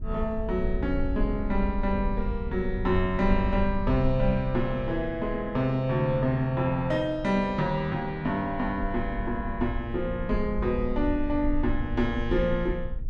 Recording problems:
low-frequency rumble; below 58 Hz, SNR 7 dB

